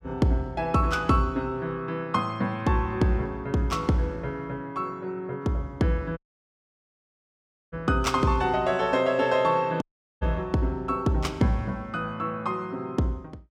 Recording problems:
audio cutting out; at 6 s for 1.5 s and at 10 s

